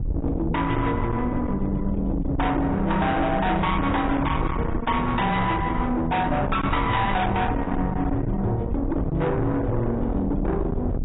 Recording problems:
lossy codec; AAC, log-spectral distance 2 dB, nothing above 3.8 kHz
distorted audio; soft clipping, signal-to-distortion ratio 6 dB
wind noise; below 320 Hz, SNR 5 dB

